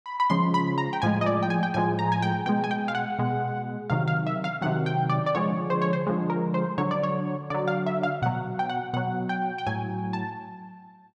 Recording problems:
none

